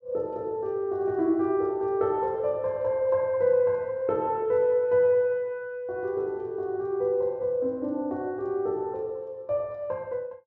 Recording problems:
treble cut off; nothing above 8 kHz

